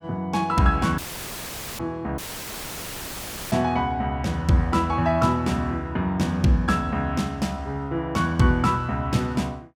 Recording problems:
audio cutting out; at 1 s for 1 s and at 2 s for 1.5 s; filled with static

